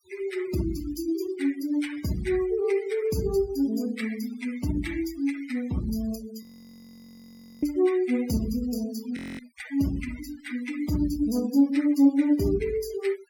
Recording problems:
denoising artefacts; signal-to-artefact ratio 18 dB
audio freezing; at 6.5 s for 1 s and at 9 s

